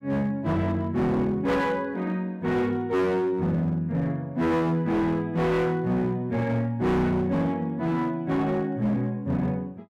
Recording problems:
distortion; hard clipping, signal-to-distortion ratio 8 dB

